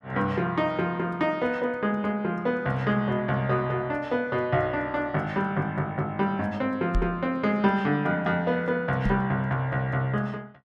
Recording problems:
microphone thump; at 7 s and at 9 s; peak +2 dB vs average level

